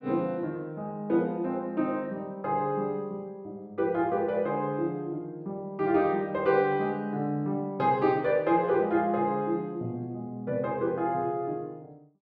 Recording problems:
none

